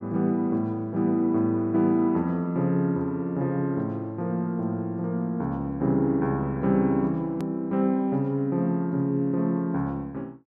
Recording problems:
click at an edit; at 7.5 s

